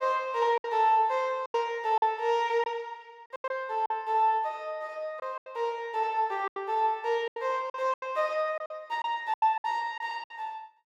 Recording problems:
packet loss; 10% of the sound replaced, filled with silence

